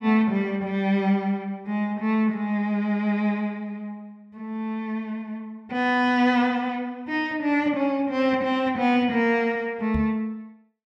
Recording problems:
microphone thump; at 10 s; peak -1 dB vs average level

